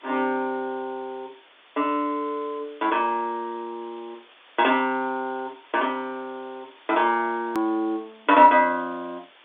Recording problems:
telephone audio; 220 Hz to 3.6 kHz, G.711
hiss; SNR 27 dB
click at an edit; at 7.5 s

